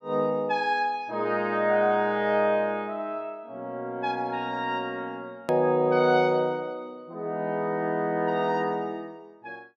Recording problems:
click at an edit; at 5.5 s

